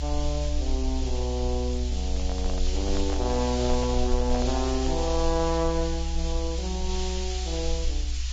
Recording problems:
codec artefacts; Vorbis, log-spectral distance 6 dB
background hiss; slope +5 dB per octave, SNR 7 dB
rumble; below 64 Hz, strongest tone 62 Hz, SNR 1 dB
microphone handling noise; from 2 to 5 s; peak -3 dB vs average level

